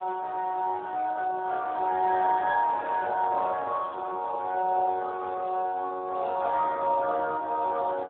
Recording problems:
phone line; 320 Hz to 2.8 kHz, Speex

